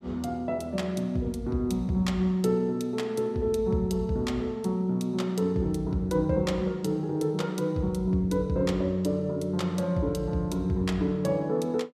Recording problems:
none

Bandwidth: 15 kHz